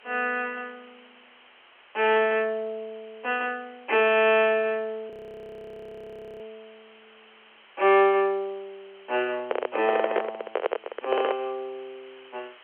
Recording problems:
telephone audio; 300 Hz to 3.3 kHz, G.711
hiss; SNR 27 dB
frozen audio; at 5 s for 1.5 s
microphone handling noise; from 9.5 to 11 s; peak +4 dB vs average level

